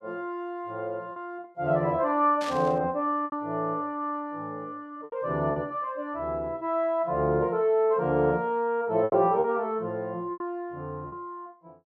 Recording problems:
lost packets; 5% of the sound replaced, filled with repeated pitch periods
static burst; at 2.5 s; peak -7 dB vs average level

